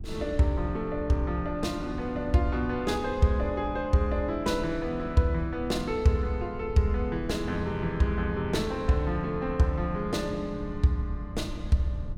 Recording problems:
rumble; below 98 Hz, SNR 13 dB

